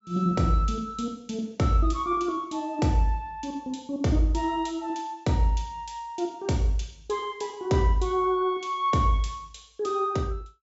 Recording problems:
low-pass filter; nothing above 8 kHz

